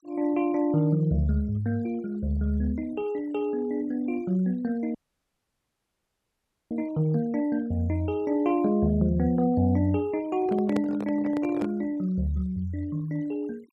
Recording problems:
noise reduction artefacts; signal-to-artefact ratio 27 dB
dropout; at 5 s for 2 s
microphone handling noise; from 10 to 12 s; peak -2 dB vs average level

